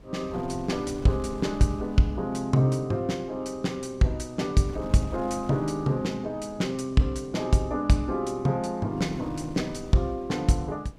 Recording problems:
wind noise; below 350 Hz, SNR 18 dB

